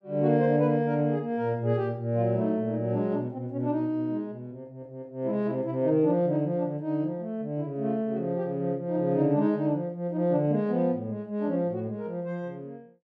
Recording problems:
none

